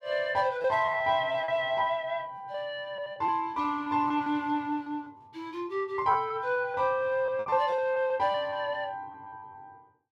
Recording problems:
packet loss; 9% of the sound replaced, filled with repeated pitch periods

